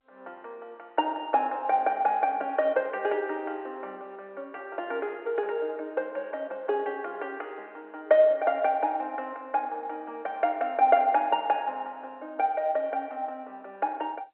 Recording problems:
phone line; 260 Hz to 3.1 kHz, G.711

